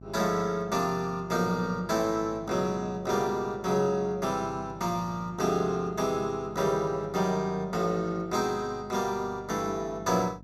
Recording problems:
hum; 50 Hz, harmonics up to 650 Hz, SNR 19 dB

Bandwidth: 15.5 kHz